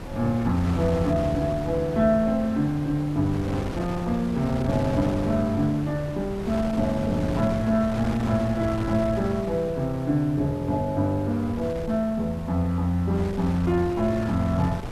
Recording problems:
hiss; SNR 30 dB
wind on the microphone; below 570 Hz, SNR 10 dB

